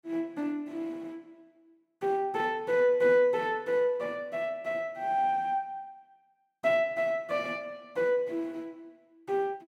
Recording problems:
none

